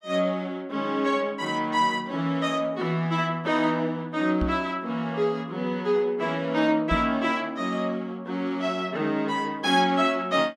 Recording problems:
knock on the microphone; at 4.5 s and at 7 s; peak +1 dB vs average level

